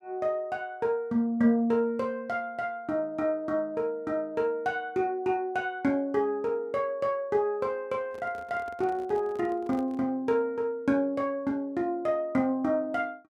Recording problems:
microphone handling noise; from 8 to 10 s; peak -12 dB vs average level

